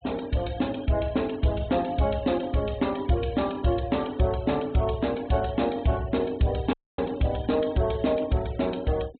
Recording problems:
low-pass filter; nothing above 4 kHz
noise reduction artefacts; signal-to-artefact ratio 23 dB
dropout; at 6.5 s

